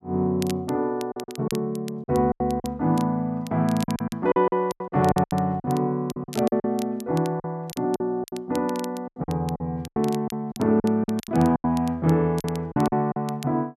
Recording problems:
crackling; vinyl, SNR 19 dB
lost packets; 13% of the sound replaced, filled with silence

